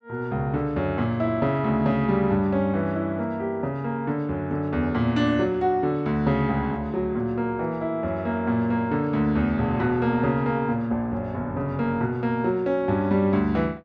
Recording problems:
none

